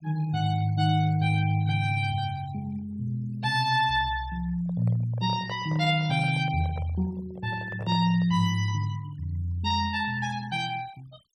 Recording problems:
denoising artefacts; signal-to-artefact ratio 22 dB
microphone handling noise; from 4.5 to 8.5 s; peak -9 dB vs average level

